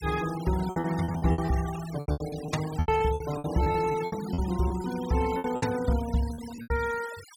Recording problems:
noise reduction artefacts; signal-to-artefact ratio 14 dB
lost packets; 16% of the sound replaced, filled with repeated pitch periods

